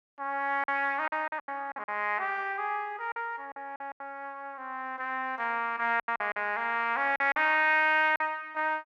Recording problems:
lost packets; 9% of the sound replaced, filled with silence

